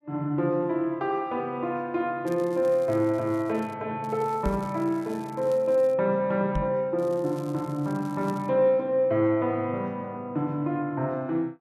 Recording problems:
crackling; from 2.5 to 3.5 s, from 4 to 6 s and from 7 to 8.5 s; loose cable, SNR 27 dB
knock on the microphone; at 4.5 s and at 6.5 s; peak +2 dB vs average level

